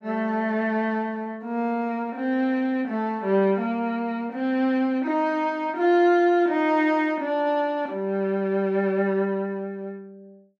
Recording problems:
none

